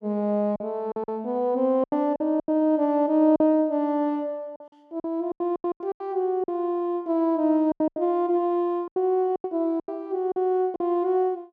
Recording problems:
lost packets; 11% of the sound replaced, filled with silence

